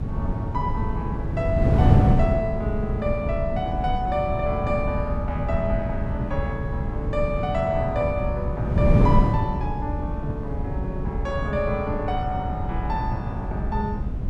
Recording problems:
rumble; below 72 Hz, SNR 6 dB
wind on the microphone; below 200 Hz, SNR -1 dB

